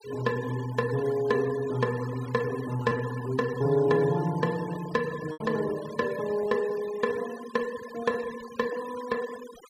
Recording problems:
denoising artefacts; signal-to-artefact ratio 16 dB
lost packets; 1.9% of the sound replaced, filled with repeated pitch periods

